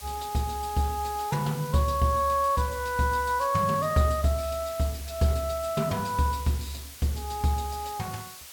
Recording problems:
hiss; slope +2 dB per octave, SNR 14 dB

